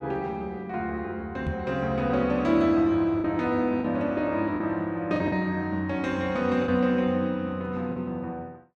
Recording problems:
packet loss; 3% of the sound replaced, filled with the last packet
microphone bump; at 1.5 s; peak -2 dB vs average level

